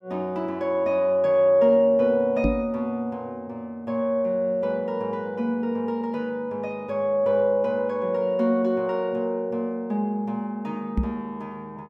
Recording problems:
microphone thump; at 2.5 s and at 11 s; peak +3 dB vs average level

